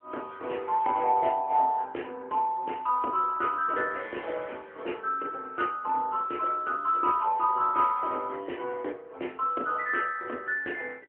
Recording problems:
phone line; 300 Hz to 3.2 kHz, AMR-NB

